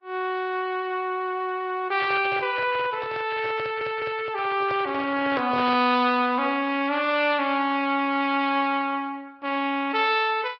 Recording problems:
low-pass filter; nothing above 5.5 kHz
codec artefacts; Vorbis, then MP3, log-spectral distance 3 dB
handling noise; from 2 to 6 s; peak -6 dB vs average level
stutter; at 3.5 s

